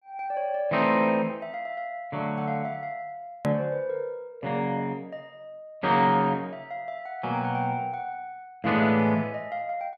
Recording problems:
edit click; at 3.5 s

